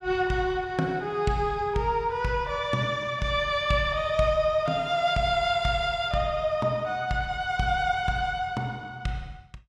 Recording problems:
none

